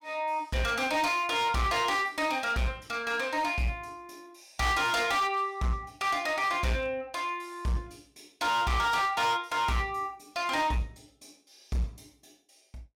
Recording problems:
distortion; hard clipping, signal-to-distortion ratio 10 dB

